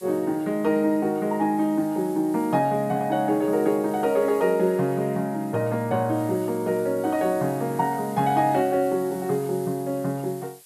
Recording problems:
hiss; slope +3 dB per octave, SNR 22 dB

